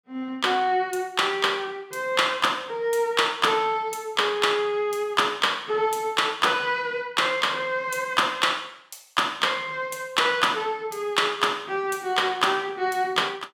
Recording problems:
none

